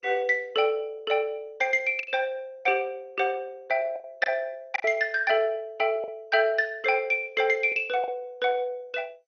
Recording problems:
lossy codec; MP2, log-spectral distance 2 dB, nothing above 5.5 kHz
lost packets; 4% of the sound replaced, filled with the last packet

